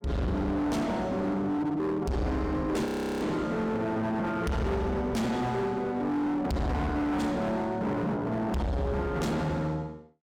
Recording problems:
distortion; hard clipping, signal-to-distortion ratio 6 dB
audio freezing; at 3 s

